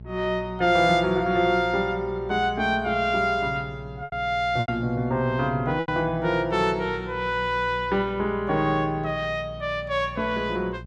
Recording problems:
hum; 60 Hz, harmonics up to 600 Hz, SNR 16 dB
packet loss; 2% of the sound replaced, filled with repeated pitch periods

